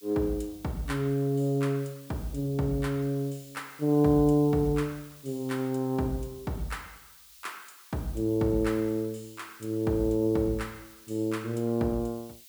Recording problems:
hiss; slope +7 dB per octave, SNR 22 dB

